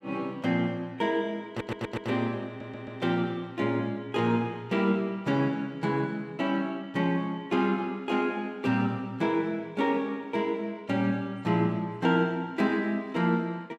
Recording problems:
audio stuttering; at 1.5 s and at 2.5 s

